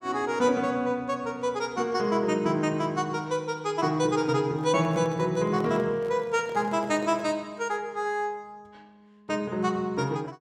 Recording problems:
microphone handling noise; from 4.5 to 7.5 s; peak -9 dB vs average level

